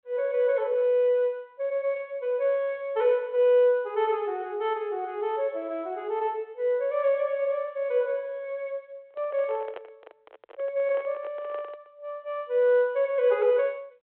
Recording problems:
phone line; 340 Hz to 3.4 kHz, G.726
handling noise; from 9 to 12 s; peak -9 dB vs average level

